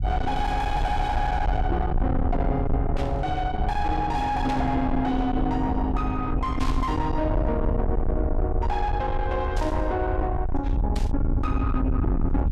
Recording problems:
distortion; soft clipping, signal-to-distortion ratio 5 dB
rumble; below 98 Hz, SNR 1 dB
burst of static; 5 times, first at 3 s; peak -8 dB vs average level

